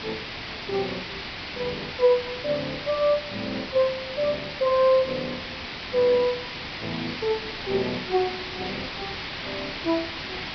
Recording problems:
low-pass filter; nothing above 5.5 kHz
hiss; SNR 7 dB

